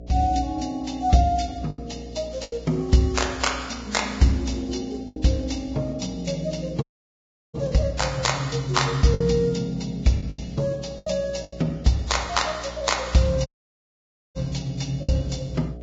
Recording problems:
codec artefacts; Vorbis, log-spectral distance 4 dB, nothing above 7.3 kHz
hum; 60 Hz, harmonics up to 720 Hz, SNR 16 dB
lost packets; 4% of the sound replaced, filled with the last packet
audio cutting out; at 7 s for 0.5 s and at 13 s for 1 s

